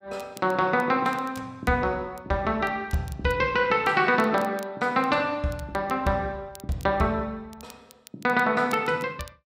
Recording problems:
crackle; vinyl, SNR 25 dB

